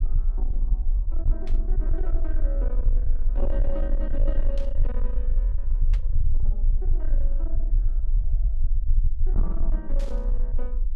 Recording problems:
distorted audio; soft clipping, signal-to-distortion ratio 11 dB
low-frequency rumble; below 38 Hz, strongest tone 22 Hz, SNR -12 dB
static burst; 4 times, first at 1.5 s; peak -2 dB vs average level

